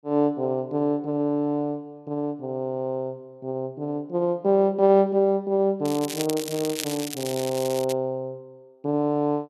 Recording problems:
crackling; from 6 to 8 s; loose cable, SNR 9 dB

